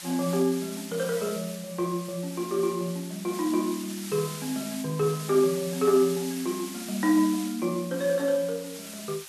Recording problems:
background hiss; slope +3 dB per octave, SNR 12 dB

